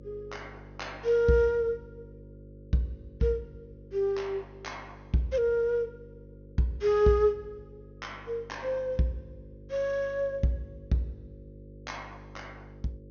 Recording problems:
treble cut off; nothing above 6.6 kHz
hum; 50 Hz, harmonics up to 550 Hz, SNR 20 dB

